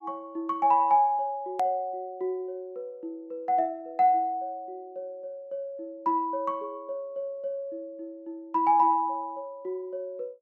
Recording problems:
hard cut with a click; at 1.5 s

